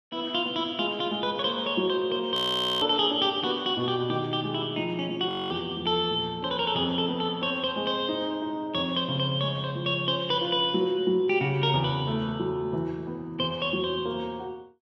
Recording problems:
frozen audio; at 2.5 s and at 5.5 s

